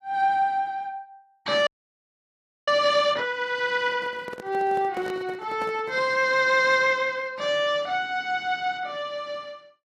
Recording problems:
codec artefacts; AAC, log-spectral distance 2 dB
audio freezing; at 1.5 s for 1 s
handling noise; from 4 to 6 s; peak -9 dB vs average level

